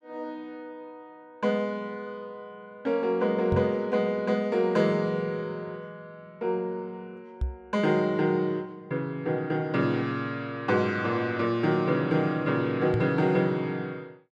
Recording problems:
knock on the microphone; at 3.5 s, at 7.5 s and at 13 s; peak +3 dB vs average level

